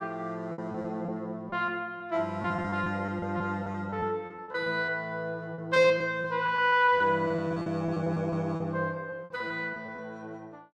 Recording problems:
lost packets; 12% of the sound replaced, filled with repeated pitch periods

